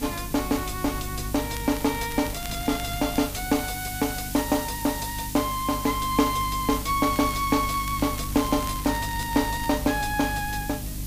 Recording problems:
hum; 50 Hz, harmonics up to 300 Hz, SNR 10 dB
hiss; SNR 10 dB
wind on the microphone; below 150 Hz, SNR 15 dB
crackling; from 1.5 to 3.5 s and from 7 to 9.5 s; loose cable, SNR 15 dB

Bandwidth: 15 kHz